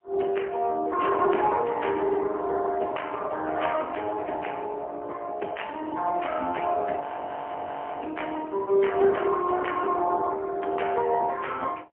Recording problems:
phone line; 190 Hz to 3.2 kHz, AMR-NB, then MP3
audio freezing; at 7 s for 1 s

